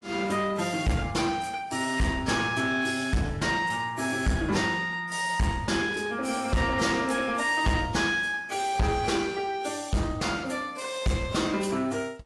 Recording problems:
codec artefacts; AAC, log-spectral distance 3 dB
distortion; soft clipping, signal-to-distortion ratio 7 dB

